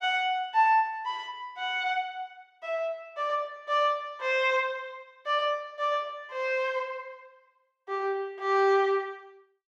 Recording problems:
none

